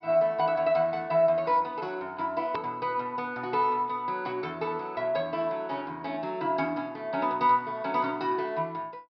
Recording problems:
treble missing; nothing above 5.5 kHz
edit click; at 2.5 s

